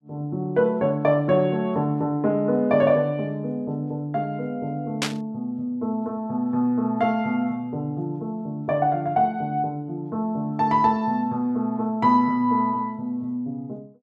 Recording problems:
static burst; at 5 s; peak +3 dB vs average level

